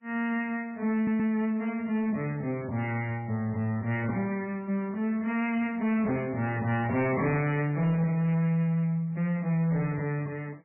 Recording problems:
lossy codec; MP3, log-spectral distance 2 dB, nothing above 2.6 kHz
distortion; soft clipping, signal-to-distortion ratio 11 dB
audio stuttering; at 1 s

